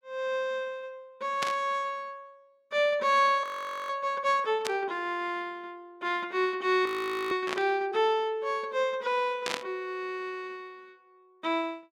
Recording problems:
static burst; 4 times, first at 1.5 s; peak +2 dB vs average level
frozen audio; at 3.5 s and at 7 s

